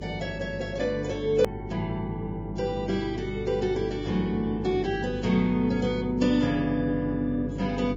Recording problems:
lossy compression; Vorbis, log-spectral distance 2 dB, nothing above 20.1 kHz
hum; 50 Hz, harmonics up to 450 Hz, SNR 10 dB
hard cut with a click; at 1.5 s

